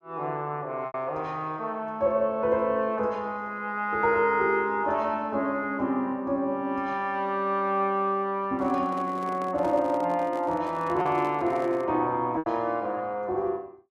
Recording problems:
lost packets; 1.5% of the sound replaced, filled with repeated pitch periods
microphone handling noise; from 8.5 to 12 s; peak -10 dB vs average level

